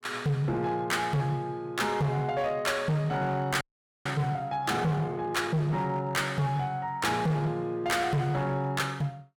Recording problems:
distortion; hard clipping, signal-to-distortion ratio 8 dB
audio freezing; at 3.5 s

